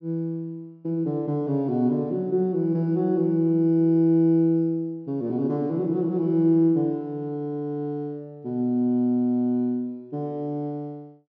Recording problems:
treble cut off; nothing above 6.2 kHz

